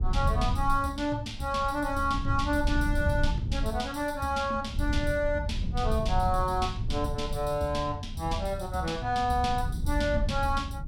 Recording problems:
rumble; below 94 Hz, SNR 4 dB

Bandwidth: 17 kHz